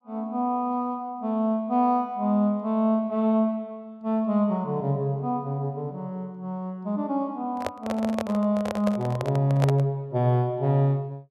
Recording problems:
handling noise; from 7.5 to 10 s; peak +2 dB vs average level

